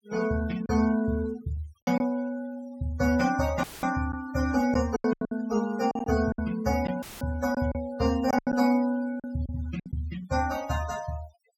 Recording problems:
noise reduction artefacts; signal-to-artefact ratio 17 dB
packet loss; 7% of the sound replaced, filled with silence
dropout; at 3.5 s and at 7 s; filled with static

